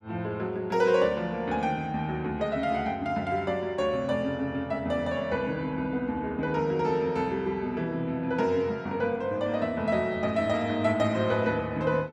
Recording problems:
none

